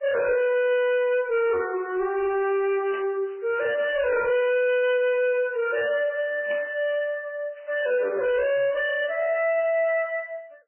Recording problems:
codec artefacts; MP3, log-spectral distance 2 dB, nothing above 2.7 kHz
distorted audio; soft clipping, signal-to-distortion ratio 7 dB
static burst; at 3 s and at 6.5 s; peak -11 dB vs average level

